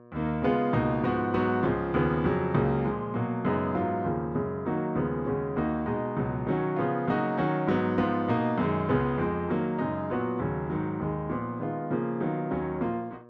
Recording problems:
hum; 60 Hz, harmonics up to 1.8 kHz, SNR 25 dB

